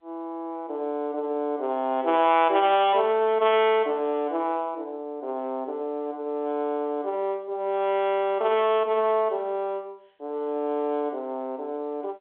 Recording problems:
telephone audio; 260 Hz to 3.5 kHz, G.711

